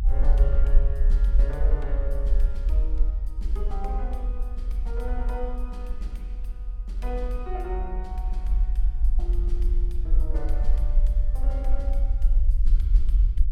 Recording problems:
low-frequency rumble; below 46 Hz, SNR -12 dB

